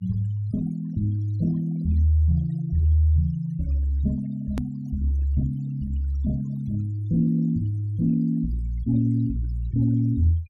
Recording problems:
denoising artefacts; signal-to-artefact ratio 24 dB
hard cut with a click; at 4.5 s

